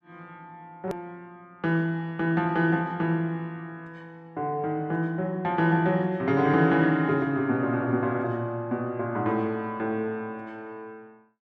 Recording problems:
edit click; at 1 s

